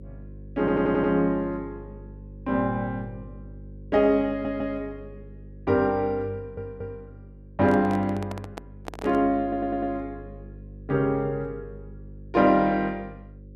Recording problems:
mains hum; 50 Hz, harmonics up to 550 Hz, SNR 19 dB
audio stuttering; 4 times, first at 0.5 s
handling noise; from 7.5 to 9 s; peak -6 dB vs average level

